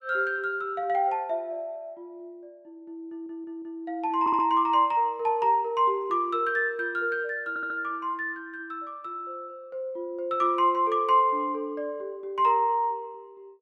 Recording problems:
audio stuttering; at 3 s, at 4 s and at 7.5 s

